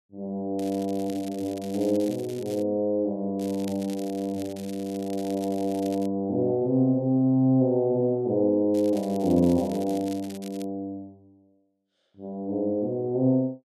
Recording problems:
crackling; from 0.5 to 2.5 s, from 3.5 to 6 s and from 8.5 to 11 s; loose cable, SNR 21 dB

